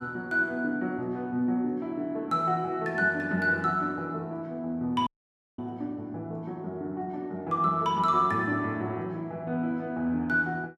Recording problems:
dropout; at 5 s for 0.5 s

